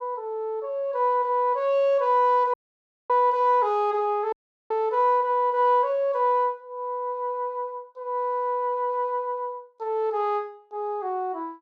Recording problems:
audio cutting out; at 2.5 s for 0.5 s and at 4.5 s

